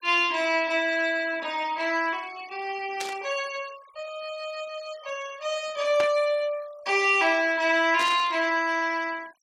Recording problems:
denoising artefacts; signal-to-artefact ratio 22 dB
static burst; at 3 s, at 6 s and at 8 s; peak -3 dB vs average level

